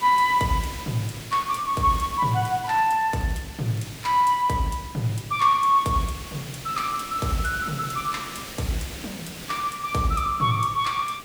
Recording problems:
background hiss; SNR 14 dB
crackling; from 1.5 to 4.5 s; loose cable, SNR 29 dB

